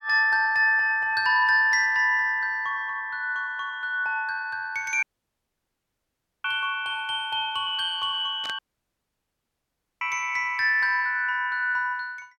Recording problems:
dropout; at 5 s for 1.5 s and at 8.5 s for 1.5 s
burst of static; at 8.5 s; peak -10 dB vs average level

